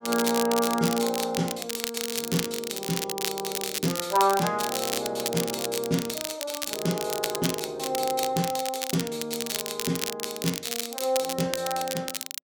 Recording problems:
crackle; vinyl, SNR 3 dB

